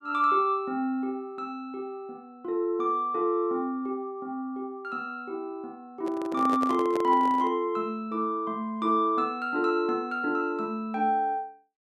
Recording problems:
microphone handling noise; from 6 to 7.5 s; peak -2 dB vs average level

